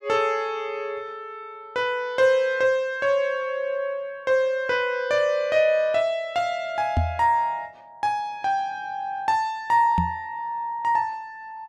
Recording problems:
microphone bump; at 7 s and at 10 s; peak +4 dB vs average level

